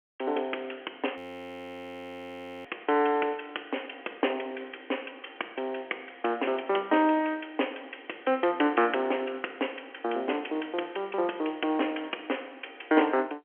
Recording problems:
telephone audio; 280 Hz to 3.2 kHz, G.711
frozen audio; at 1 s for 1.5 s

